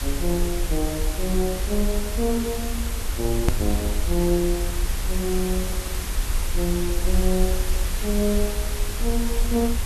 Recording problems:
hiss; slope -2 dB per octave, SNR 5 dB
rumble; below 56 Hz, SNR 2 dB
hard cut with a click; at 3.5 s

